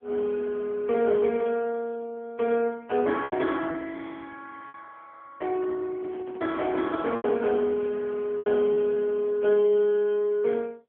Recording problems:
telephone audio; 240 Hz to 3.4 kHz, AMR-NB
lost packets; 3% of the sound replaced, filled with repeated pitch periods
microphone handling noise; from 6 to 7.5 s; peak -13 dB vs average level

